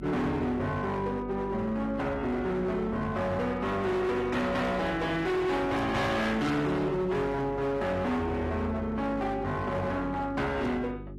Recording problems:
codec artefacts; AAC, log-spectral distance 2 dB, nothing above 13.1 kHz
distortion; hard clipping, signal-to-distortion ratio 8 dB
hum; 50 Hz, harmonics up to 400 Hz, SNR 13 dB

